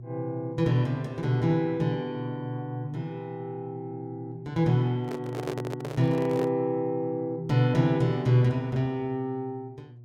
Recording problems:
hum; 60 Hz, harmonics up to 360 Hz, SNR 17 dB
handling noise; from 5 to 6.5 s; peak -3 dB vs average level

